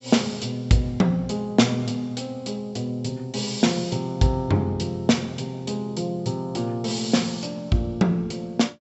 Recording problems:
treble cut off; nothing above 7.8 kHz

